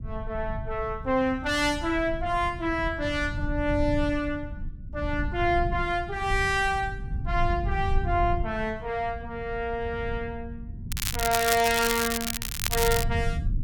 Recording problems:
low-frequency rumble; below 100 Hz, SNR 7 dB
crackle; from 11 to 13 s; loose cable, SNR 2 dB

